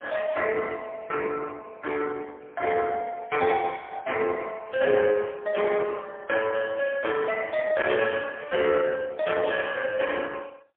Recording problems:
telephone audio; 300 Hz to 2.9 kHz, AMR-NB, then MP3

